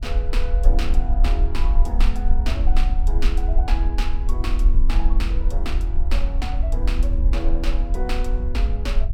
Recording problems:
low-frequency rumble; below 44 Hz, strongest tone 20 Hz, SNR -8 dB

